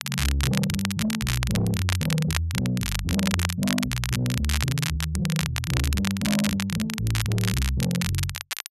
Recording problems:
distorted audio; soft clipping, signal-to-distortion ratio 11 dB
crackling; vinyl, SNR 4 dB

